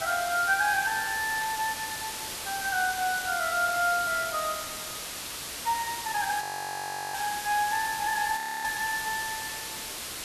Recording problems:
background hiss; slope 0 dB per octave, SNR 6 dB
audio freezing; at 6.5 s for 0.5 s and at 8.5 s

